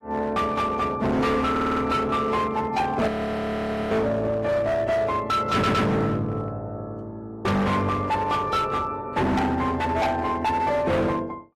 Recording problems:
codec artefacts; AAC, log-spectral distance 2 dB, nothing above 13.1 kHz
distorted audio; hard clipping, signal-to-distortion ratio 7 dB
audio stuttering; at 1.5 s and at 5.5 s
audio freezing; at 3 s for 1 s

